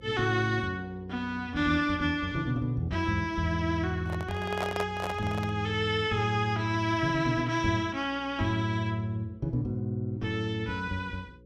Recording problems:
hum; 60 Hz, harmonics up to 540 Hz, SNR 24 dB
handling noise; from 4 to 5.5 s; peak 0 dB vs average level

